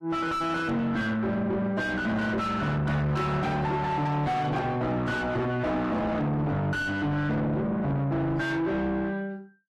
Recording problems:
lossy codec; AAC, log-spectral distance 2 dB, nothing above 13.1 kHz
distortion; soft clipping, signal-to-distortion ratio 6 dB

